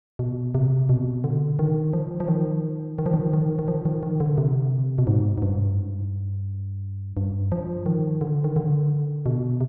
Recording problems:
none

